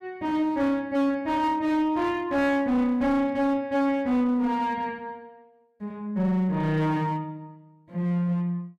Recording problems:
distorted audio; hard clipping, uneven, signal-to-distortion ratio 10 dB

